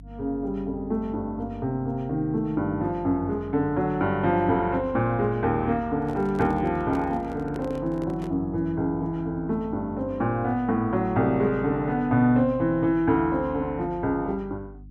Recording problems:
mains hum; 50 Hz, harmonics up to 300 Hz, SNR 19 dB
microphone handling noise; from 6 to 8.5 s; peak -7 dB vs average level

